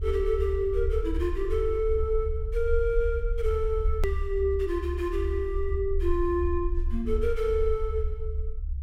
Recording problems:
low-frequency rumble; below 70 Hz, SNR 3 dB
click at an edit; at 4 s

